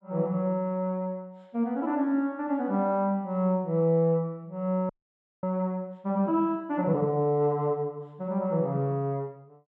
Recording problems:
frozen audio; at 5 s for 0.5 s

